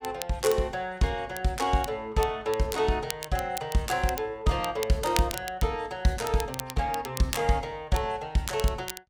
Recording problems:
crackle; vinyl, SNR 11 dB

